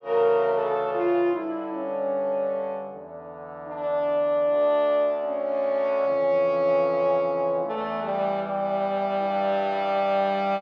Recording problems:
none

